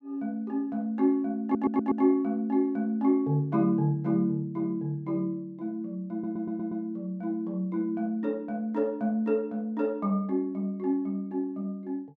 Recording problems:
audio stuttering; at 1.5 s and at 6 s

